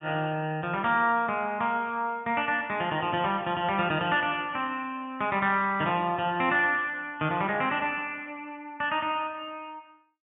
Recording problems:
low-pass filter; nothing above 4 kHz

